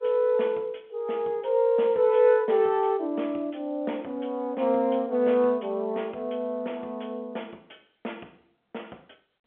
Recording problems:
telephone audio; 220 Hz to 3.7 kHz, G.711

